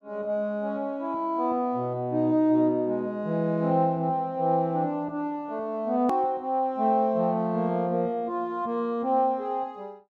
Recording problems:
edit click; at 6 s

